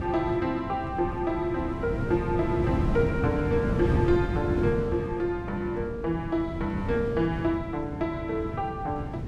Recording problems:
wind on the microphone; below 250 Hz, SNR 3 dB

